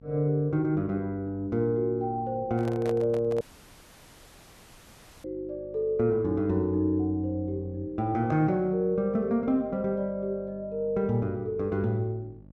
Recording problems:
electrical hum; 50 Hz, harmonics up to 850 Hz, SNR 23 dB
handling noise; at 2.5 s; peak -5 dB vs average level
dropout; at 3.5 s for 2 s

